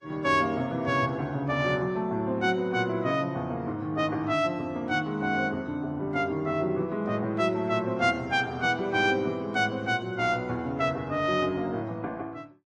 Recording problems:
codec artefacts; MP3, then Vorbis, log-spectral distance 2 dB

